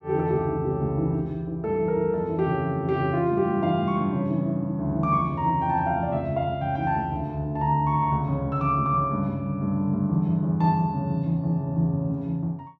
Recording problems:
none

